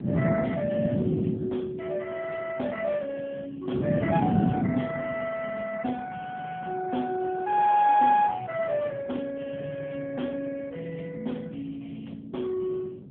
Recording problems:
telephone audio; 170 Hz to 3.5 kHz, AMR-NB
wind noise; below 290 Hz, SNR 0 dB

